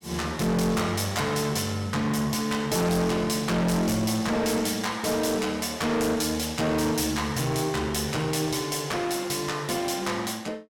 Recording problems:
distorted audio; hard clipping, uneven, signal-to-distortion ratio 5 dB

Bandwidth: 17.5 kHz